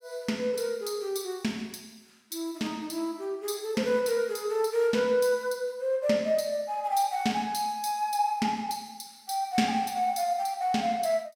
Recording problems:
none

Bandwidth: 16.5 kHz